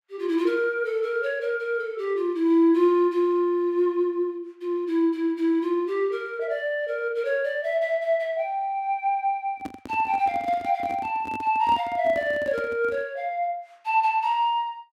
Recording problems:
microphone handling noise; from 9.5 to 13 s; peak -6 dB vs average level

